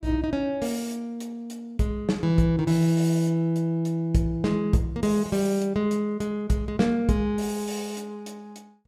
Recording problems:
none

